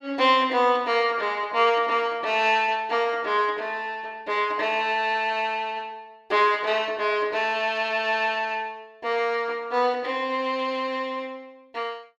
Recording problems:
none

